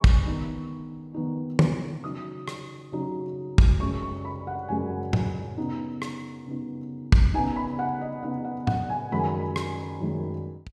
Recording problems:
none

